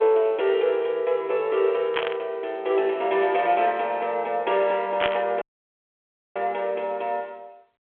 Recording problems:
phone line; 320 Hz to 3.5 kHz, G.726
burst of static; at 2 s and at 5 s; peak +3 dB vs average level
audio cutting out; at 5.5 s for 1 s

